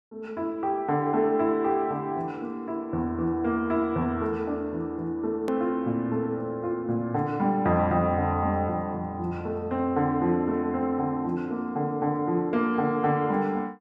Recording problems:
edit click; at 5.5 s

